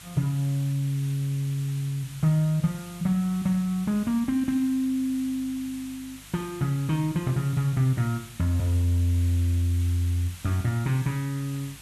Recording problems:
electrical hum; 50 Hz, harmonics up to 400 Hz, SNR 26 dB
background hiss; SNR 18 dB

